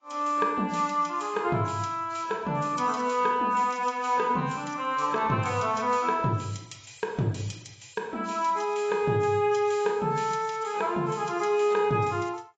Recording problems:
lossy compression; AAC, log-spectral distance 4 dB, nothing above 7.3 kHz

